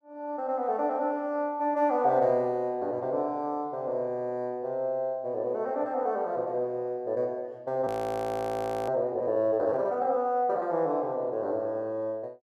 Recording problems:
frozen audio; at 8 s for 1 s

